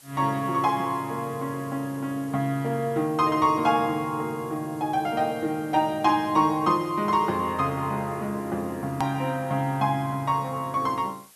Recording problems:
hiss; slope 0 dB per octave, SNR 24 dB
hard cut with a click; at 9 s

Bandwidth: 12.5 kHz